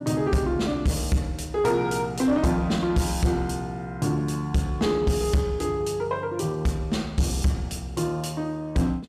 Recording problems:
distorted audio; soft clipping, signal-to-distortion ratio 11 dB

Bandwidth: 15.5 kHz